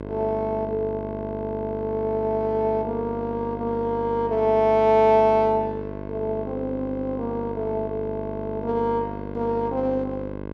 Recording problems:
hum; 50 Hz, harmonics up to 2 kHz, SNR 10 dB

